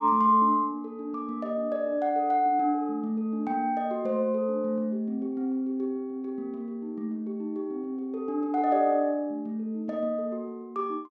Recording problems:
none

